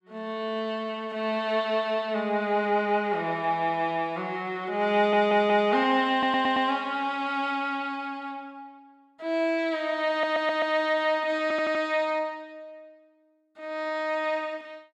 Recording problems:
audio stuttering; 4 times, first at 5 s

